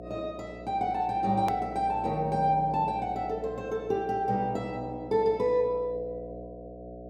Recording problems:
hum; 60 Hz, harmonics up to 720 Hz, SNR 14 dB
hard cut with a click; at 1.5 s

